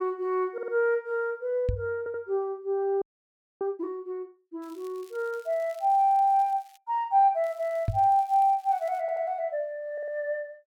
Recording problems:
stutter; 4 times, first at 0.5 s
knock on the microphone; at 1.5 s and at 8 s; peak +3 dB vs average level
frozen audio; at 3 s for 0.5 s
crackling; from 4.5 to 7 s and from 7.5 to 9 s; loose cable, SNR 30 dB

